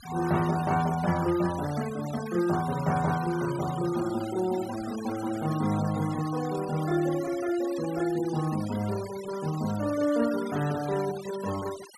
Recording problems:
denoising artefacts; signal-to-artefact ratio 14 dB

